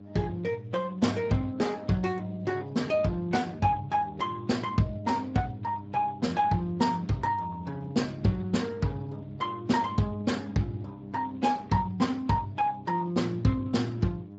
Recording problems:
lossy codec; Speex, log-spectral distance 3 dB, nothing above 7.6 kHz
electrical hum; 50 Hz, harmonics up to 700 Hz, SNR 16 dB

